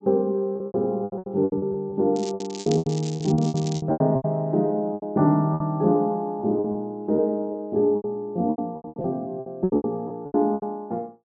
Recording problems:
treble missing; nothing above 8 kHz
lost packets; 18% of the sound replaced, filled with repeated pitch periods
crackling; from 2 to 4 s; loose cable, SNR 15 dB

